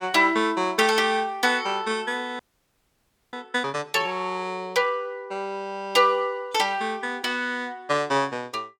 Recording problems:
frozen audio; at 2.5 s for 1 s

